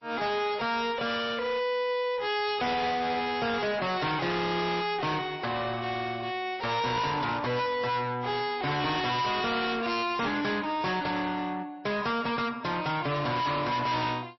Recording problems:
lossy codec; MP3, log-spectral distance 4 dB, nothing above 5.7 kHz
distorted audio; soft clipping, signal-to-distortion ratio 6 dB

